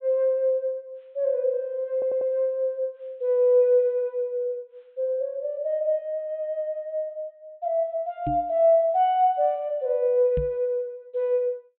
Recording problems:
low-pass filter; nothing above 4 kHz
stutter; at 2 s
knock on the microphone; at 8.5 s and at 10 s; peak -2 dB vs average level

